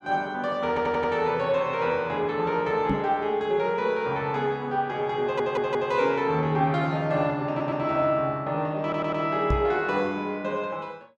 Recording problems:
stutter; 4 times, first at 0.5 s
microphone bump; at 3 s and at 9.5 s; peak +2 dB vs average level

